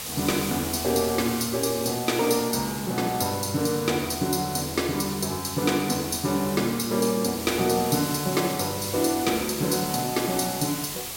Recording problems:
hiss; SNR 8 dB

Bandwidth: 16.5 kHz